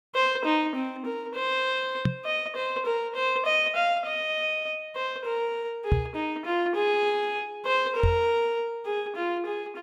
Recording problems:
microphone thump; at 2 s, at 6 s and at 8 s; peak +7 dB vs average level

